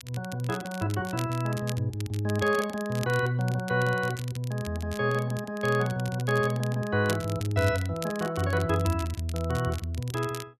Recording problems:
crackle; vinyl, SNR 16 dB

